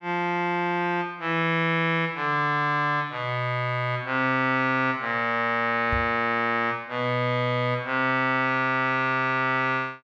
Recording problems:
microphone thump; at 6 s; peak -3 dB vs average level

